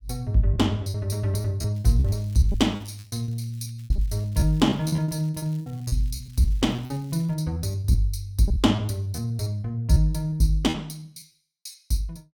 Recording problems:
packet loss; 14% of the sound replaced, filled with repeated pitch periods
crackle; from 2 to 3.5 s and from 4 to 7.5 s; loose cable, SNR 29 dB

